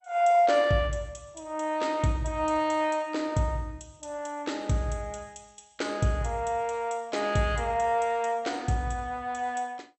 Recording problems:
codec artefacts; MP2, log-spectral distance 3 dB, nothing above 8 kHz

